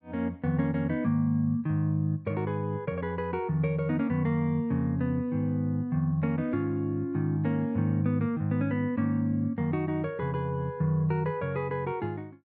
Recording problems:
none

